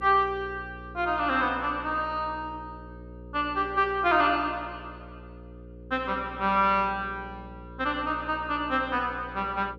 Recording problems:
electrical hum; 60 Hz, harmonics up to 540 Hz, SNR 17 dB

